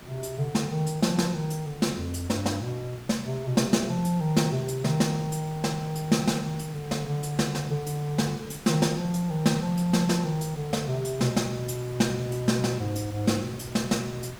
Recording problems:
background hiss; slope -4 dB per octave, SNR 17 dB

